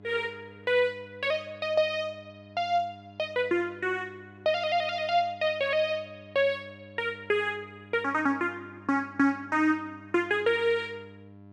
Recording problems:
hum; 50 Hz, harmonics up to 1.1 kHz, SNR 22 dB

